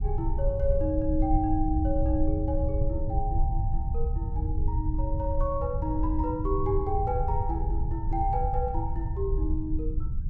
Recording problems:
low-frequency rumble; below 80 Hz, SNR -1 dB

